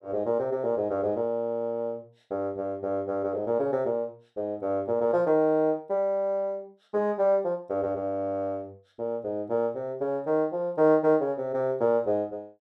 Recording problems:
none

